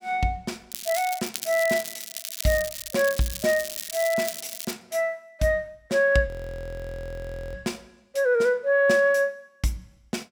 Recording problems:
crackling; from 0.5 to 4.5 s; loose cable, SNR 8 dB
frozen audio; at 6.5 s for 1.5 s

